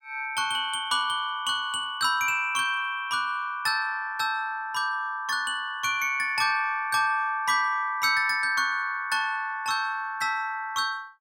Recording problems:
none

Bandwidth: 17 kHz